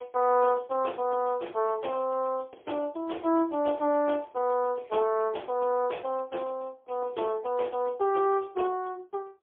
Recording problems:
telephone audio; 280 Hz to 3.4 kHz, AMR-NB, then MP3

